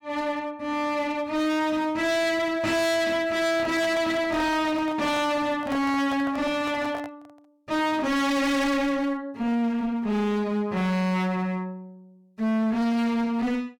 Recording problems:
distorted audio; hard clipping, uneven, signal-to-distortion ratio 5 dB
microphone handling noise; from 3.5 to 7.5 s; peak -5 dB vs average level

